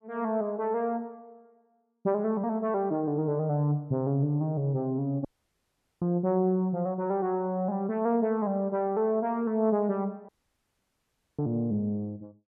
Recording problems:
dropout; at 5.5 s for 1 s and at 10 s for 1 s

